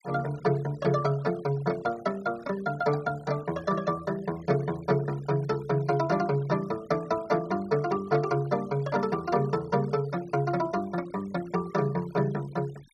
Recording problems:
noise reduction artefacts; signal-to-artefact ratio 22 dB

